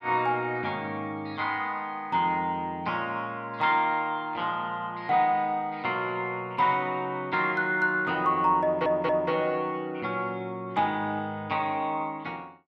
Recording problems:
stutter; at 8.5 s

